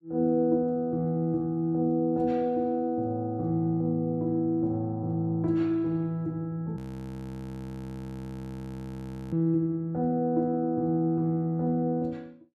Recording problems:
audio freezing; at 7 s for 2.5 s

